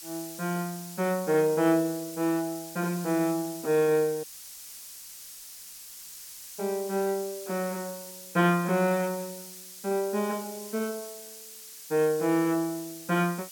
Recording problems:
hiss; SNR 13 dB
audio cutting out; at 4 s for 2.5 s

